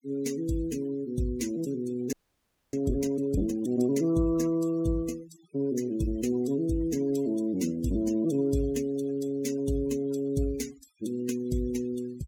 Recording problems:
denoising artefacts; signal-to-artefact ratio 17 dB
frozen audio; at 2 s for 0.5 s

